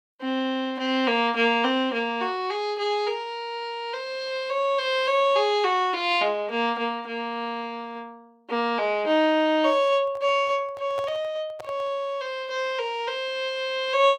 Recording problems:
microphone handling noise; from 10 to 12 s; peak -9 dB vs average level

